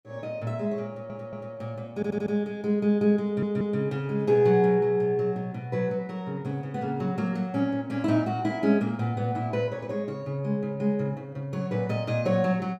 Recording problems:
audio stuttering; at 1 s, at 2 s and at 3.5 s

